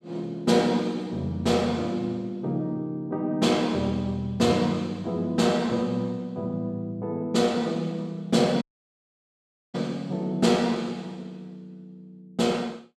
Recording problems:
audio cutting out; at 8.5 s for 1 s

